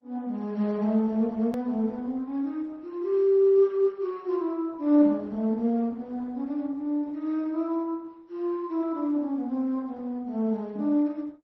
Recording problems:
lossy compression; MP3, then Opus, log-spectral distance 2 dB, nothing above 18.3 kHz
click at an edit; at 1.5 s

